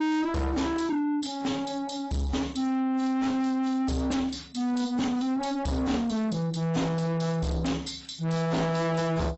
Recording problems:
codec artefacts; AAC, log-spectral distance 4 dB, nothing above 7.8 kHz
distorted audio; soft clipping, signal-to-distortion ratio 6 dB

